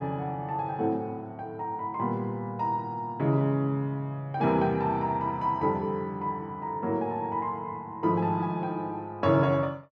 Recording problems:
none

